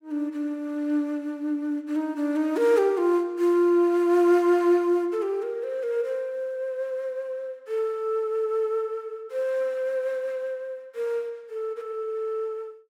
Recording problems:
none

